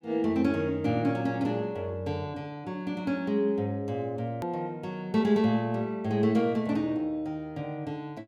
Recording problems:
hard cut with a click; at 4.5 s

